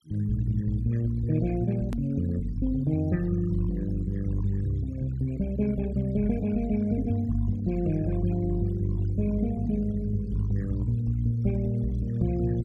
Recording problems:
denoising artefacts; signal-to-artefact ratio 23 dB
hard cut with a click; at 2 s

